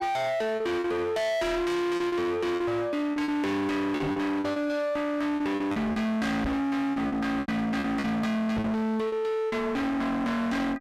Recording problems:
distorted audio; hard clipping, uneven, signal-to-distortion ratio 5 dB
lost packets; 9% of the sound replaced, filled with repeated pitch periods
knock on the microphone; at 4 s, at 6.5 s and at 8.5 s; peak +4 dB vs average level

